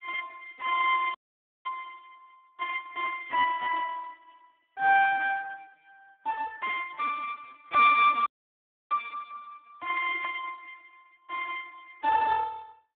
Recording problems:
telephone audio; 900 Hz to 3 kHz, Speex
dropout; at 1 s for 0.5 s and at 8.5 s for 0.5 s

